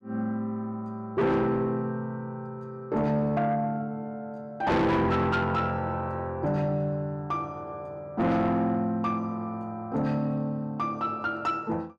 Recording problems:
distortion; soft clipping, signal-to-distortion ratio 8 dB

